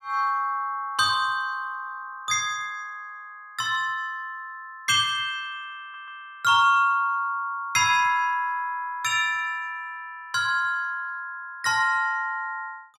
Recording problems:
stutter; at 6 s

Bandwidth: 16 kHz